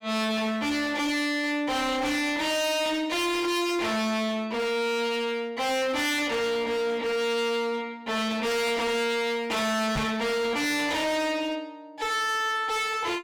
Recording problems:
distortion; hard clipping, uneven, signal-to-distortion ratio 5 dB
knock on the microphone; at 10 s; peak +2 dB vs average level

